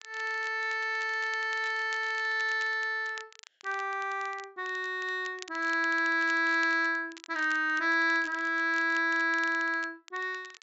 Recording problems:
treble missing; nothing above 7.5 kHz
crackle; vinyl, SNR 21 dB

